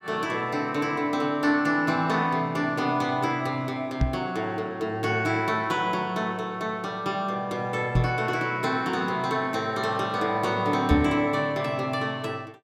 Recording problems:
microphone bump; at 4 s, at 8 s and at 11 s; peak +7 dB vs average level

